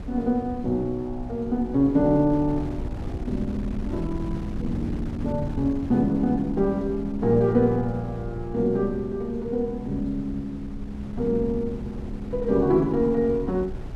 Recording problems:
wind on the microphone; below 140 Hz, SNR 12 dB

